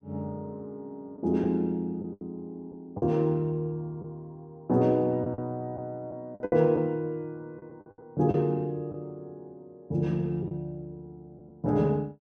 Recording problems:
packet loss; 6% of the sound replaced, filled with the last packet

